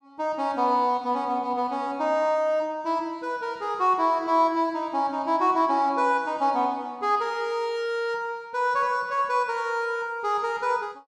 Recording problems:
none

